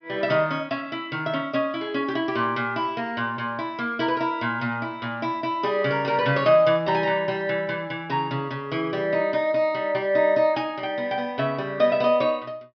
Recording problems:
treble cut off; nothing above 5.5 kHz

